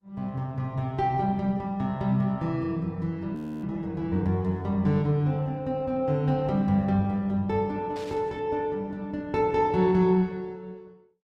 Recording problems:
lossy codec; Opus, log-spectral distance 2 dB
frozen audio; at 3.5 s
static burst; at 8 s; peak -16 dB vs average level

